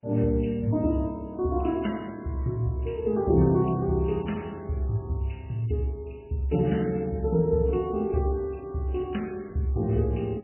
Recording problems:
lossy compression; MP3, log-spectral distance 4 dB, nothing above 3 kHz

